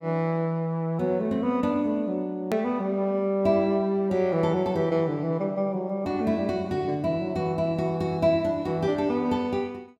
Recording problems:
hard cut with a click; at 2.5 s

